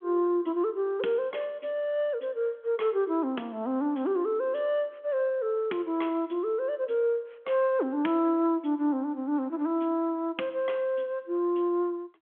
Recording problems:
telephone audio; 220 Hz to 3.4 kHz, G.726

